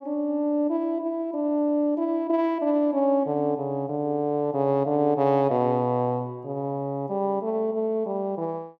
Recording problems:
none

